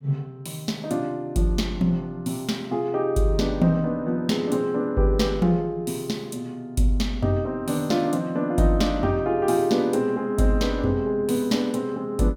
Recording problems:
none

